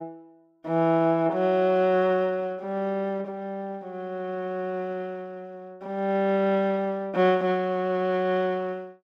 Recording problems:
none

